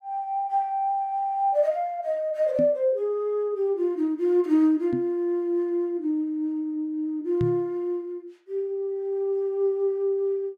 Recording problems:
microphone thump; at 2.5 s, at 5 s and at 7.5 s; peak +1 dB vs average level

